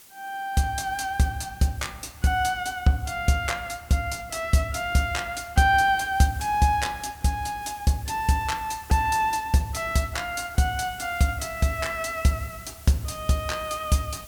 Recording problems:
hiss; slope 0 dB per octave, SNR 21 dB

